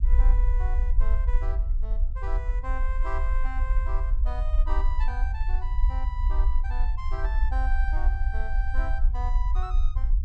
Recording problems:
rumble; below 50 Hz, SNR -11 dB

